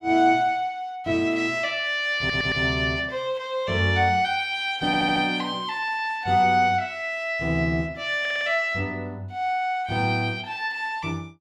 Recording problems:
audio stuttering; at 2 s, at 5 s and at 8 s

